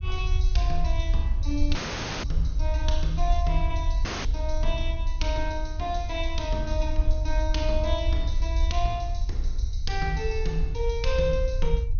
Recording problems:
treble missing; nothing above 6.5 kHz
rumble; below 62 Hz, SNR -3 dB
audio cutting out; at 2 s and at 4 s

